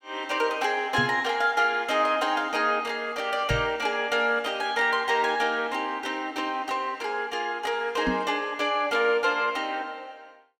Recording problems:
microphone thump; at 1 s, at 3.5 s and at 8 s; peak +1 dB vs average level

